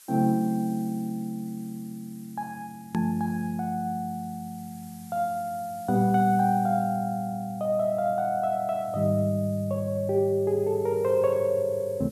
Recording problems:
hiss; slope +3 dB per octave, SNR 24 dB
edit click; at 3 s

